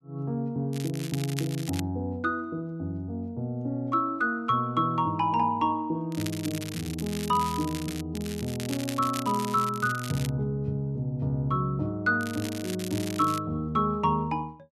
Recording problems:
crackling; 4 times, first at 0.5 s; loose cable, SNR 11 dB

